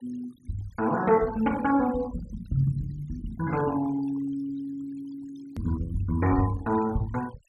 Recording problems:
denoising artefacts; signal-to-artefact ratio 18 dB
edit click; at 5.5 s

